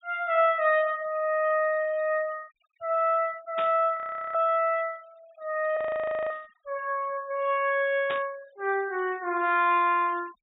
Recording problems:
low-pass filter; nothing above 4 kHz
denoising artefacts; signal-to-artefact ratio 28 dB
burst of static; at 3.5 s, at 6.5 s and at 8 s; peak -5 dB vs average level
frozen audio; at 4 s and at 6 s for 0.5 s

